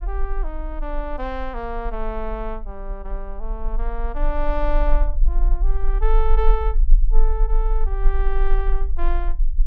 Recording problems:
rumble; below 34 Hz, strongest tone 22 Hz, SNR -5 dB

